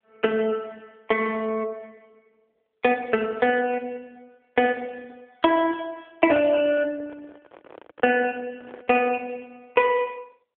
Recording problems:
phone line; 220 Hz to 3.4 kHz, AMR-NB
handling noise; from 6.5 to 9 s; peak -11 dB vs average level

